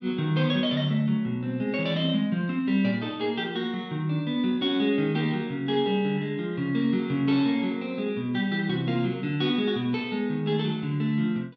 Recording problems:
none

